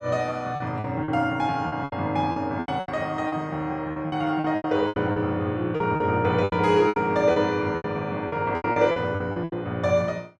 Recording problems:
packet loss; 15% of the sound replaced, filled with repeated pitch periods

